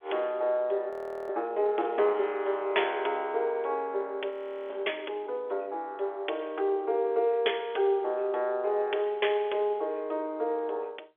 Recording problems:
phone line; 320 Hz to 3.5 kHz, G.711
audio freezing; at 1 s and at 4.5 s

